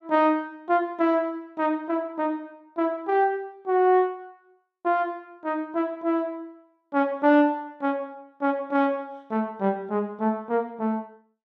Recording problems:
none

